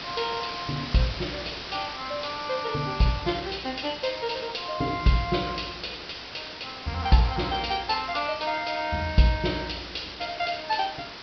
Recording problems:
treble cut off; nothing above 5.5 kHz
background hiss; slope -1 dB per octave, SNR 9 dB

